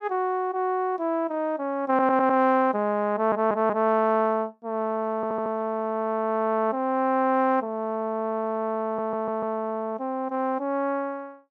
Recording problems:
audio stuttering; 4 times, first at 2 s

